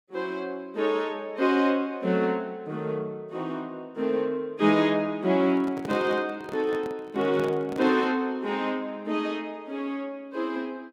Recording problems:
handling noise; from 5.5 to 8 s; peak -5 dB vs average level

